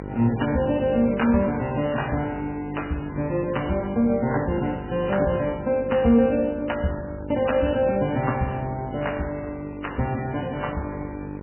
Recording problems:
lossy codec; MP3, log-spectral distance 9 dB, nothing above 2.9 kHz
hum; 50 Hz, harmonics up to 1.4 kHz, SNR 12 dB

